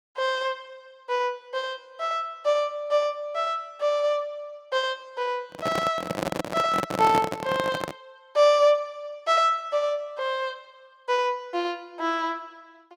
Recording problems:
handling noise; from 5.5 to 8 s; peak +2 dB vs average level

